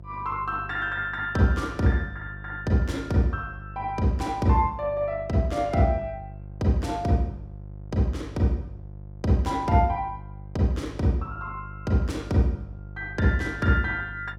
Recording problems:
hum; 50 Hz, harmonics up to 700 Hz, SNR 15 dB

